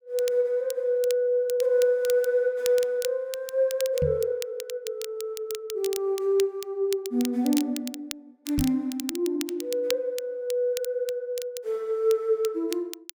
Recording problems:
crackle; vinyl, SNR 13 dB
microphone bump; at 4 s and at 8.5 s; peak +1 dB vs average level

